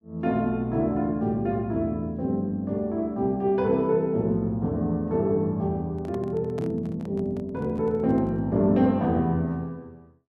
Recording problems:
handling noise; from 6 to 8.5 s; peak -11 dB vs average level

